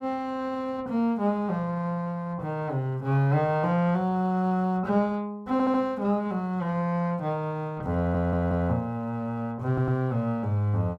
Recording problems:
audio stuttering; at 5.5 s, at 8 s and at 9.5 s

